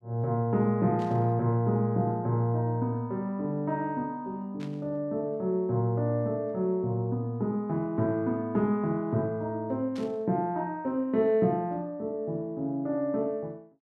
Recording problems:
static burst; at 1 s, at 4.5 s and at 10 s; peak -14 dB vs average level

